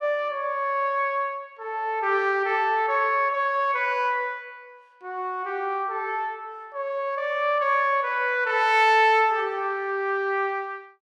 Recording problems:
none

